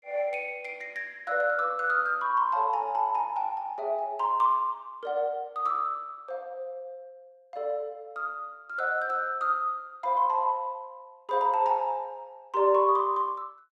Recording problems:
none

